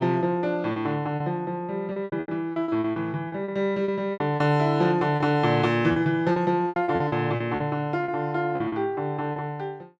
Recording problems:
lost packets; 13% of the sound replaced, filled with repeated pitch periods

